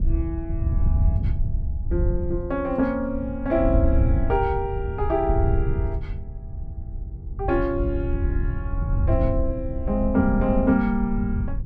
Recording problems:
wind on the microphone; below 94 Hz, SNR 2 dB

